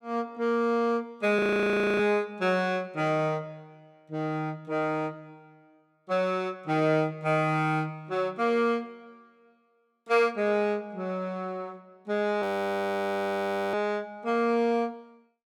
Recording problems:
frozen audio; at 1.5 s for 0.5 s and at 12 s for 1.5 s

